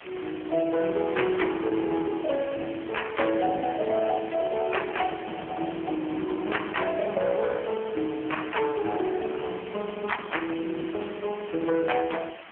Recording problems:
phone line; 220 Hz to 3.2 kHz, AMR-NB
background hiss; SNR 17 dB

